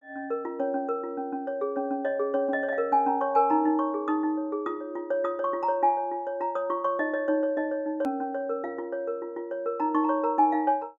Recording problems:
edit click; at 8 s

